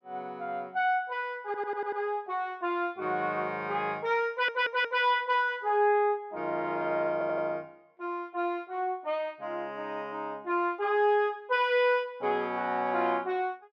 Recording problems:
stutter; at 1.5 s, at 4.5 s and at 7 s

